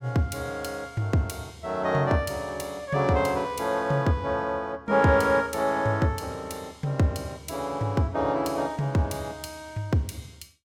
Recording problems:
none

